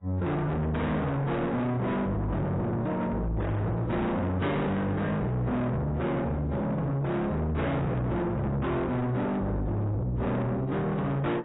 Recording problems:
lossy compression; AAC, log-spectral distance 2 dB, nothing above 3.8 kHz
distorted audio; soft clipping, signal-to-distortion ratio 6 dB

